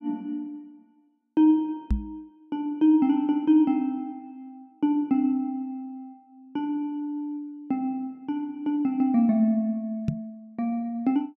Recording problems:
knock on the microphone; at 2 s and at 10 s; peak +4 dB vs average level

